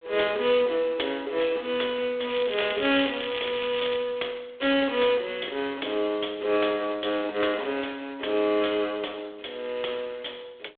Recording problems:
telephone audio; 320 Hz to 3.6 kHz, G.726
crackle; from 2.5 to 4 s; loose cable, SNR 8 dB

